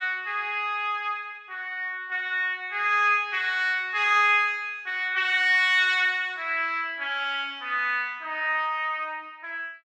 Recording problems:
none

